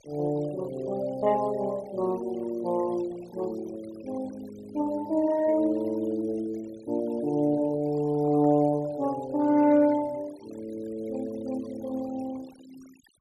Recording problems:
denoising artefacts; signal-to-artefact ratio 22 dB

